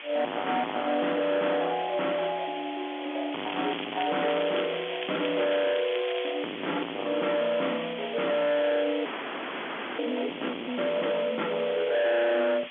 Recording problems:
telephone audio; 240 Hz to 3.4 kHz, G.711
distorted audio; hard clipping, signal-to-distortion ratio 3 dB
background hiss; SNR 11 dB
crackle; from 3.5 to 6.5 s; loose cable, SNR 10 dB
audio freezing; at 9 s for 1 s

